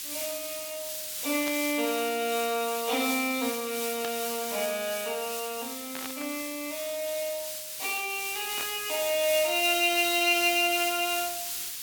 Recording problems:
background hiss; SNR 5 dB
burst of static; 4 times, first at 1.5 s; peak -5 dB vs average level

